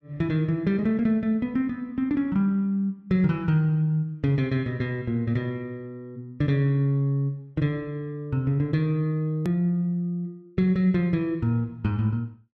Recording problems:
hard cut with a click; at 9.5 s

